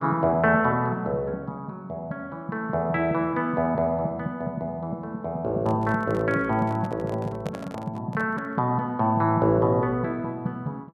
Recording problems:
handling noise; from 5.5 to 8.5 s; peak -6 dB vs average level

